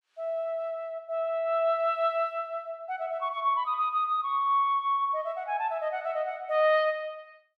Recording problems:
none

